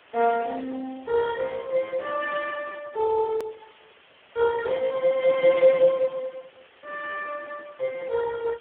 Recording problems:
phone line; 280 Hz to 2.5 kHz, Speex
hiss; SNR 27 dB
hard cut with a click; at 3.5 s

